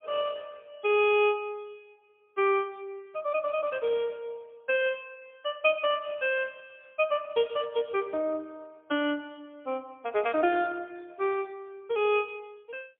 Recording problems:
phone line; 260 Hz to 3.5 kHz, AMR-NB, then MP3

